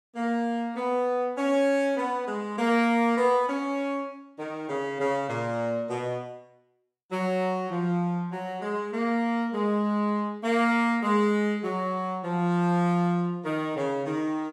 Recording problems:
none

